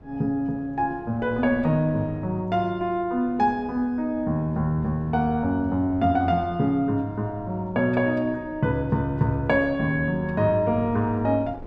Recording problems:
wind on the microphone; below 390 Hz, SNR 20 dB

